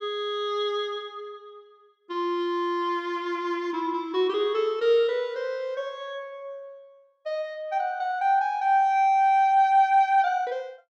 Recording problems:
none

